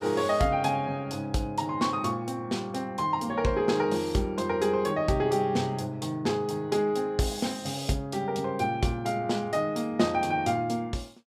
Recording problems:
none

